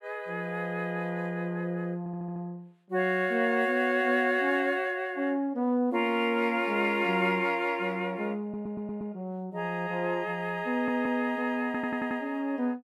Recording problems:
audio stuttering; 4 times, first at 2 s

